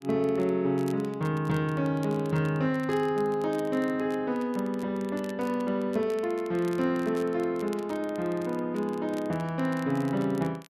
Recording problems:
crackling; vinyl, SNR 24 dB

